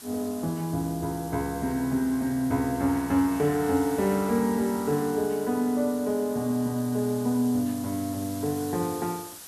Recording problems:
hiss; SNR 15 dB

